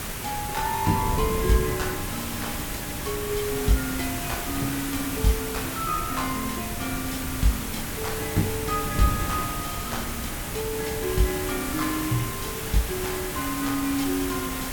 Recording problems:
background hiss; slope -2 dB per octave, SNR 3 dB
wind noise; below 220 Hz, SNR 7 dB

